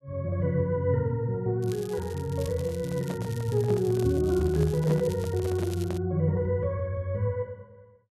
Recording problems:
crackle; from 1.5 to 6 s; loose cable, SNR 20 dB
microphone handling noise; from 2.5 to 6 s; peak -6 dB vs average level

